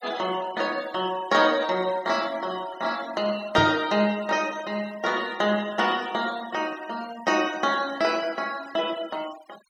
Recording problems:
denoising artefacts; signal-to-artefact ratio 19 dB
knock on the microphone; at 3.5 s; peak 0 dB vs average level

